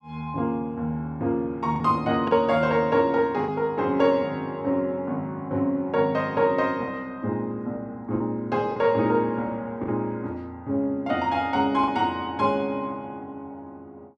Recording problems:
lost packets; 2% of the sound replaced, filled with the last packet

